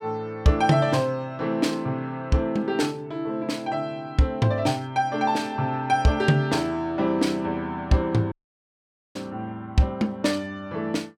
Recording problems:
dropout; at 8.5 s for 1 s

